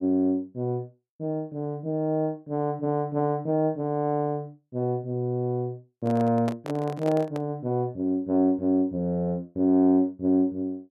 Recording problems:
handling noise; from 6 to 7.5 s; peak -3 dB vs average level

